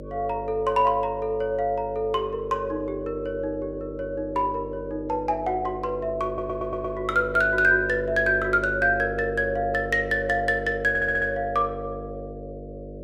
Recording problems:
mains hum; 50 Hz, harmonics up to 600 Hz, SNR 12 dB
stutter; at 6.5 s and at 11 s

